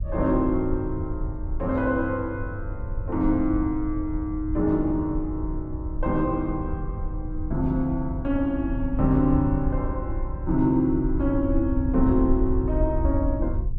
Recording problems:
hum; 60 Hz, harmonics up to 1.1 kHz, SNR 26 dB
low-frequency rumble; below 76 Hz, SNR 6 dB

